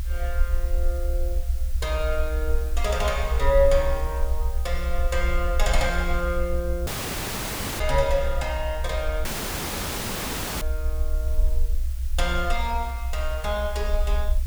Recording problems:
background hiss; SNR 18 dB
low-frequency rumble; below 62 Hz, strongest tone 20 Hz, SNR 1 dB
dropout; at 7 s for 1 s and at 9.5 s for 1.5 s

